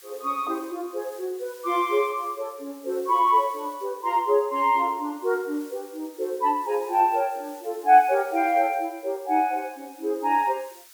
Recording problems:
hiss; SNR 24 dB

